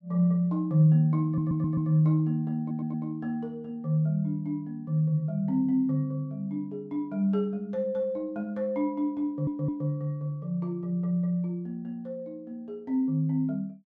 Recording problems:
audio stuttering; at 1.5 s, at 2.5 s and at 9.5 s

